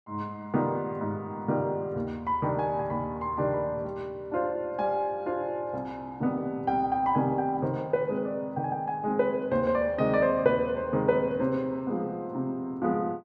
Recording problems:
none

